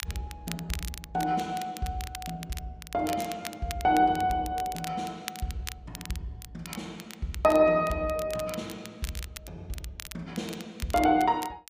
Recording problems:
crackling; vinyl, SNR 14 dB

